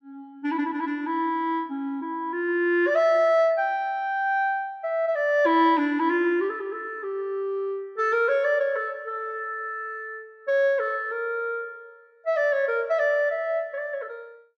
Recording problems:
none

